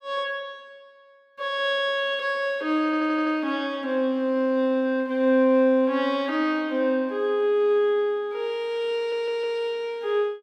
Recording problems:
audio stuttering; at 3 s and at 9 s

